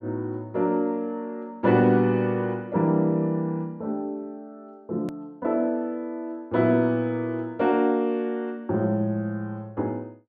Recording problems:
hard cut with a click; at 5 s

